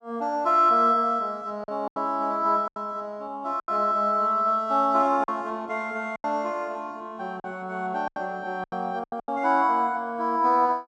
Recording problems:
packet loss; 7% of the sound replaced, filled with silence

